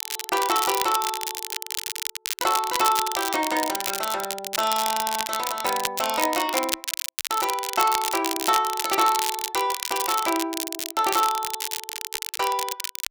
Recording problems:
crackle; vinyl, SNR 3 dB

